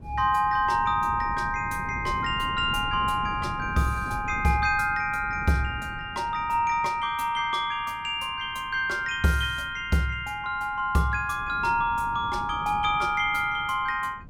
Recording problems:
wind noise; below 220 Hz, SNR 15 dB

